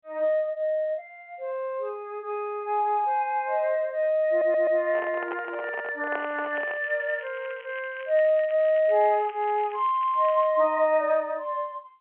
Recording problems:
phone line; 300 Hz to 3.1 kHz, G.711
stutter; at 4.5 s
microphone handling noise; from 5 to 7 s; peak -4 dB vs average level
crackling; from 6 to 10 s; loose cable, SNR 23 dB

